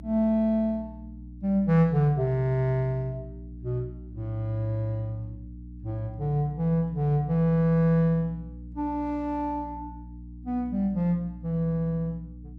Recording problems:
hum; 60 Hz, harmonics up to 300 Hz, SNR 16 dB

